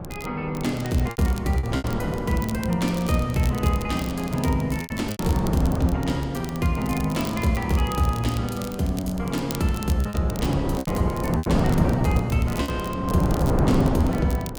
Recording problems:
wind on the microphone; below 450 Hz, SNR 4 dB
crackling; vinyl, SNR 16 dB
packet loss; 5% of the sound replaced, filled with repeated pitch periods

